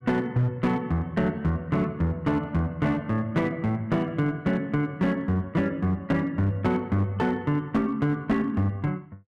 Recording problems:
distorted audio; hard clipping, uneven, signal-to-distortion ratio 10 dB

